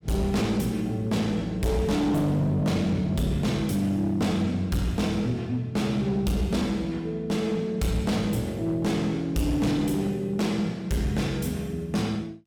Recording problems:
distortion; hard clipping, signal-to-distortion ratio 11 dB

